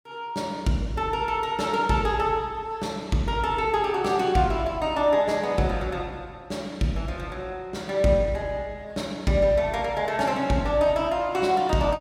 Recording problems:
none

